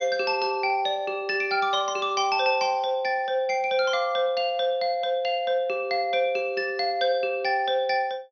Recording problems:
treble cut off; nothing above 6.4 kHz

